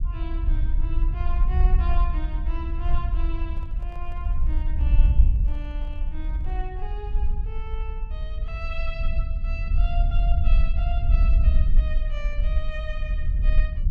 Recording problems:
low-frequency rumble; below 54 Hz, SNR -13 dB
handling noise; from 3.5 to 6.5 s; peak -10 dB vs average level

